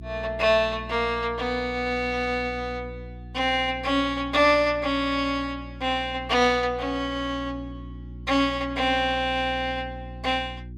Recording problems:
electrical hum; 60 Hz, harmonics up to 360 Hz, SNR 15 dB

